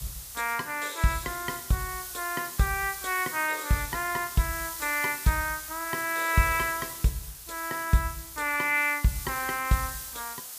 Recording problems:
hiss; slope +2 dB per octave, SNR 8 dB

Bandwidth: 15 kHz